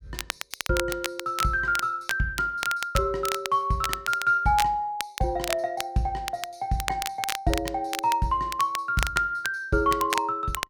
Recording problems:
crackling; vinyl, SNR 8 dB

